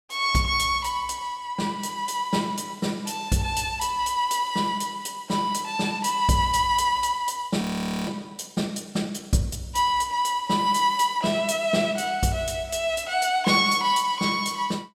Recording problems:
audio freezing; at 7.5 s

